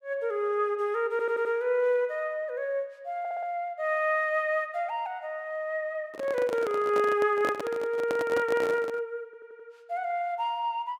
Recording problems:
stutter; at 1 s, at 3 s and at 9.5 s
handling noise; from 6 to 9 s; peak 0 dB vs average level

